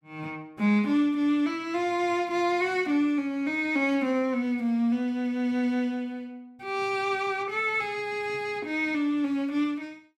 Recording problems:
none

